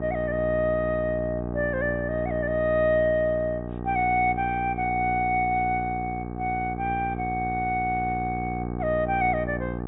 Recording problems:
treble cut off; nothing above 4 kHz
hum; 60 Hz, harmonics up to 1.3 kHz, SNR 7 dB

